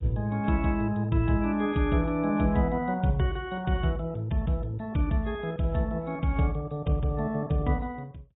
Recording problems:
lossy codec; AAC, log-spectral distance 2 dB, nothing above 3.4 kHz

